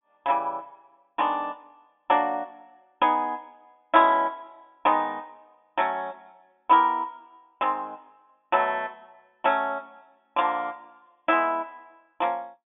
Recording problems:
low-pass filter; nothing above 3.6 kHz

